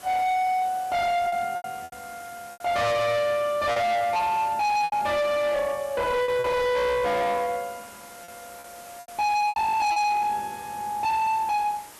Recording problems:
distorted audio; hard clipping, signal-to-distortion ratio 7 dB
background hiss; slope -2 dB per octave, SNR 21 dB
packet loss; 6% of the sound replaced, filled with repeated pitch periods

